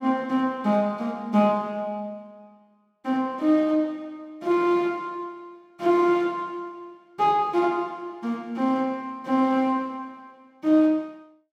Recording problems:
none

